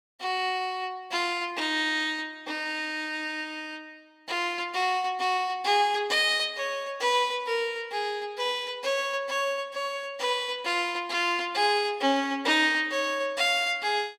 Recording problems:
none

